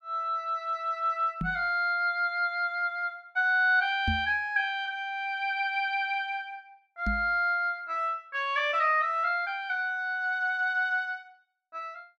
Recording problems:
microphone bump; at 1.5 s, at 4 s and at 7 s; peak +1 dB vs average level

